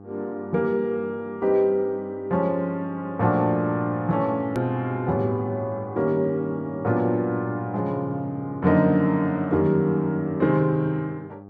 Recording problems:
hum; 50 Hz, harmonics up to 1.2 kHz, SNR 18 dB
edit click; at 4.5 s

